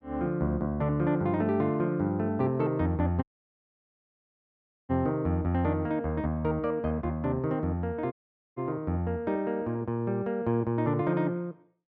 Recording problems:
dropout; at 3 s for 1.5 s and at 8 s

